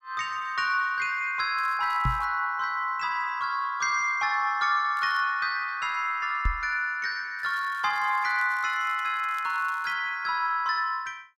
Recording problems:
crackling; at 1.5 s, at 5 s and from 7.5 to 10 s; loose cable, SNR 27 dB
microphone thump; at 2 s and at 6.5 s; peak +2 dB vs average level

